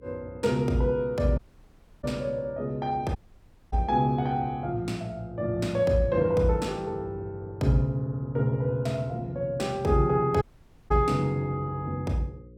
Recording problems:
hum; 60 Hz, harmonics up to 540 Hz, SNR 24 dB
audio cutting out; at 1.5 s for 0.5 s, at 3 s for 0.5 s and at 10 s

